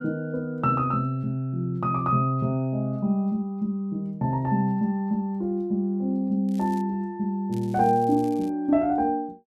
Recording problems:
crackling; at 6.5 s and at 7.5 s; loose cable, SNR 27 dB

